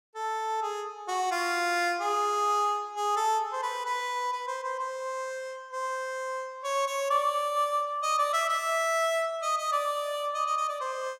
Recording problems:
none

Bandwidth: 16.5 kHz